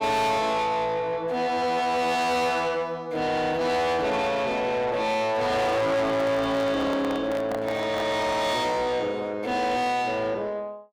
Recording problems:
distortion; soft clipping, signal-to-distortion ratio 8 dB
handling noise; from 6 to 8.5 s; peak -2 dB vs average level

